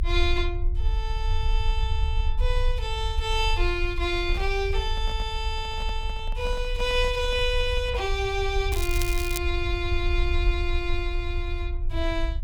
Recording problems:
rumble; below 62 Hz, strongest tone 28 Hz, SNR 1 dB
microphone handling noise; from 4 to 8 s; peak -9 dB vs average level
crackling; at 8.5 s; loose cable, SNR 6 dB

